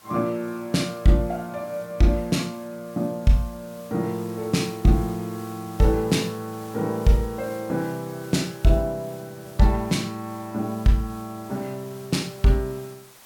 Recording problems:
background hiss; slope -1 dB per octave, SNR 22 dB

